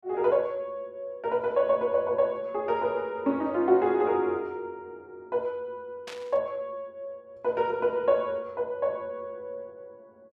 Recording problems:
burst of static; at 6 s; peak -9 dB vs average level

